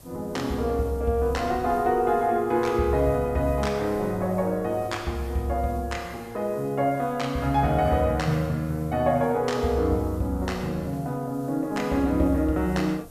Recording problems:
background hiss; SNR 27 dB
wind noise; below 540 Hz, SNR 21 dB

